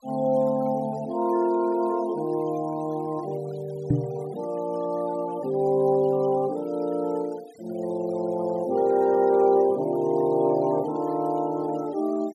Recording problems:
denoising artefacts; signal-to-artefact ratio 24 dB
microphone thump; at 4 s; peak +6 dB vs average level

